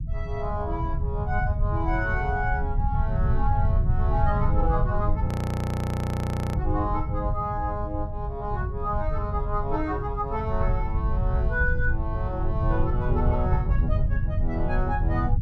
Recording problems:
low-frequency rumble; below 110 Hz, SNR -3 dB
audio freezing; at 5.5 s for 1.5 s

